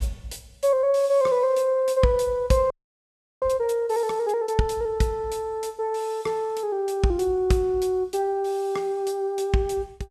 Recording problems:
frozen audio; at 2.5 s for 0.5 s

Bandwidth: 14.5 kHz